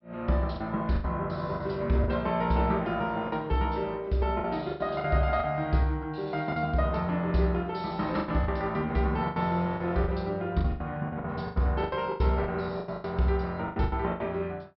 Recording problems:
treble missing; nothing above 5.5 kHz
packet loss; 11% of the sound replaced, filled with the last packet

